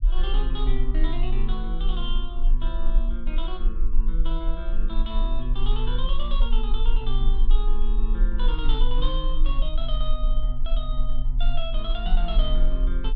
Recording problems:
rumble; below 34 Hz, strongest tone 20 Hz, SNR -7 dB

